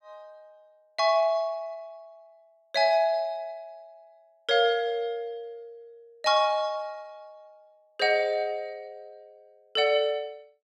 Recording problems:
none

